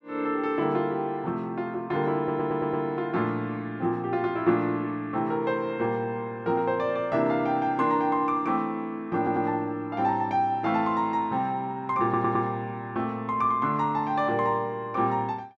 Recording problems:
audio stuttering; at 2 s, at 9 s and at 12 s

